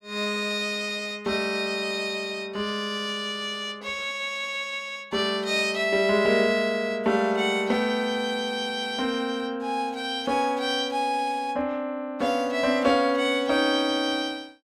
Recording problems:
none

